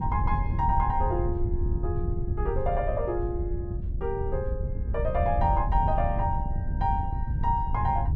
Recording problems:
wind on the microphone; below 96 Hz, SNR 0 dB

